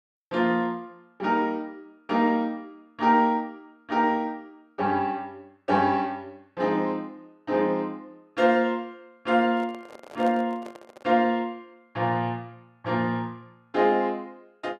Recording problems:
microphone handling noise; from 9.5 to 11 s; peak -8 dB vs average level

